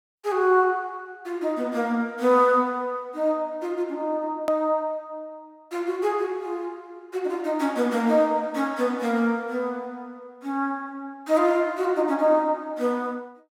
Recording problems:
edit click; at 4.5 s

